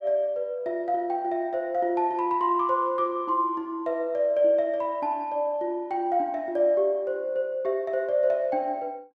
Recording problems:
none

